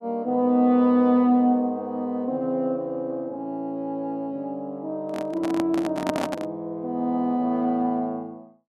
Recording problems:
microphone handling noise; from 5 to 6.5 s; peak +2 dB vs average level

